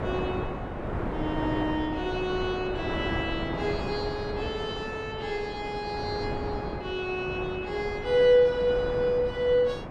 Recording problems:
wind on the microphone; below 730 Hz, SNR 6 dB

